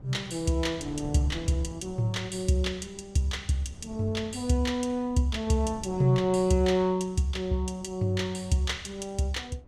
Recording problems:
wind noise; below 230 Hz, SNR 20 dB

